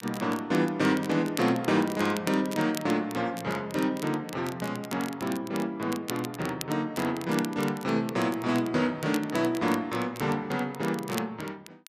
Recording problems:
crackling; vinyl, SNR 15 dB

